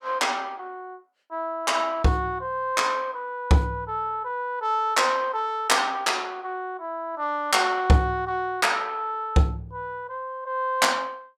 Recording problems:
none

